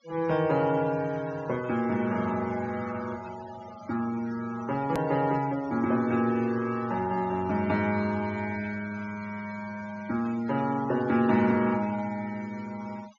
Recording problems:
treble missing; nothing above 6.9 kHz
noise reduction artefacts; signal-to-artefact ratio 19 dB
hard cut with a click; at 5 s

